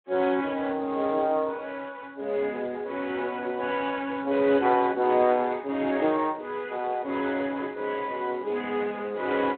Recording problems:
telephone audio; 240 Hz to 3.6 kHz, Speex

